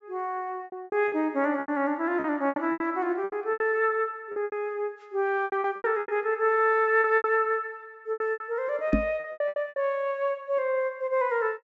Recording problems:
treble cut off; nothing above 8 kHz
packet loss; 14% of the sound replaced, filled with repeated pitch periods
microphone bump; at 9 s; peak +8 dB vs average level

